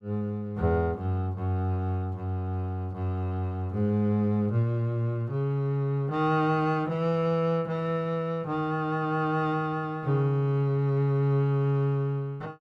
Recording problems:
none

